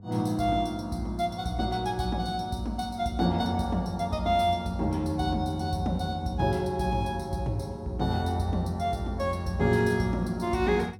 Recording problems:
hum; 50 Hz, harmonics up to 700 Hz, SNR 19 dB

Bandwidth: 17 kHz